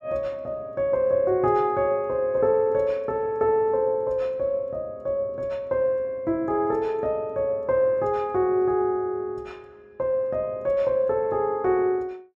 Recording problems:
none

